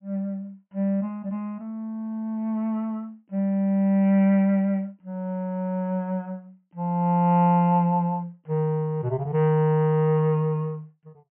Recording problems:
treble missing; nothing above 3.2 kHz

